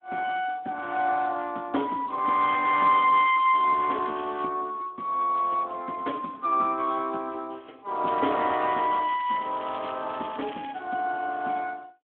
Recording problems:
phone line; 220 Hz to 3.5 kHz, Speex
crackle; from 2.5 to 4.5 s and from 8 to 11 s; loose cable, SNR 19 dB

